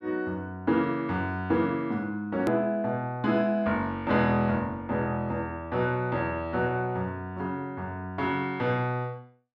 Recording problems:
hard cut with a click; at 2.5 s

